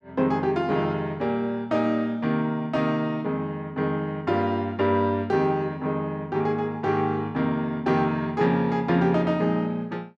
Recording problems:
none

